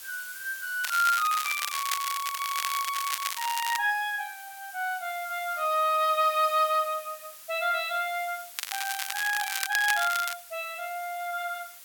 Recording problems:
hiss; slope +3 dB per octave, SNR 15 dB
crackling; from 1 to 4 s and from 8.5 to 10 s; loose cable, SNR 4 dB

